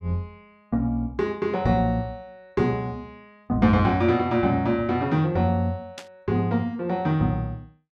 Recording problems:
static burst; at 6 s; peak -9 dB vs average level

